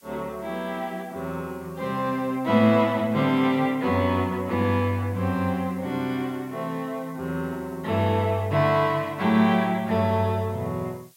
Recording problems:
hiss; slope +3 dB per octave, SNR 29 dB

